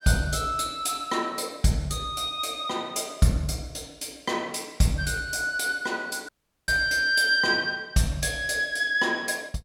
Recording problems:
audio cutting out; at 6.5 s

